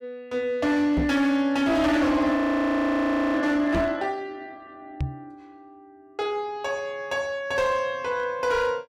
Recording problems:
distorted audio; hard clipping, signal-to-distortion ratio 10 dB
knock on the microphone; at 1 s, at 4 s and at 5 s; peak +2 dB vs average level
audio freezing; at 2.5 s for 1 s

